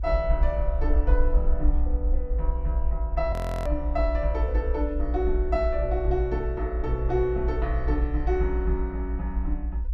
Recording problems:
low-frequency rumble; below 58 Hz, SNR -2 dB
audio freezing; at 3.5 s

